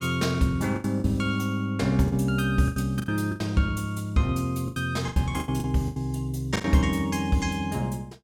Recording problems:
lost packets; 10% of the sound replaced, filled with the last packet

